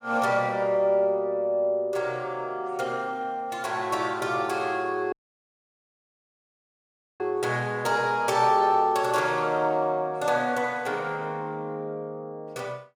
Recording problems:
dropout; at 5 s for 2 s

